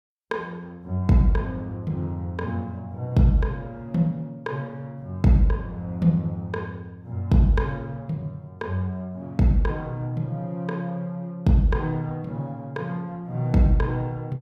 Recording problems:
none

